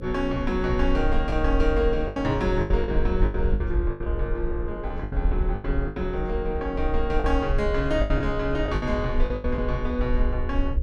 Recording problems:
hum; 60 Hz, harmonics up to 540 Hz, SNR 13 dB
rumble; below 56 Hz, SNR 2 dB
lost packets; 10% of the sound replaced, filled with the last packet

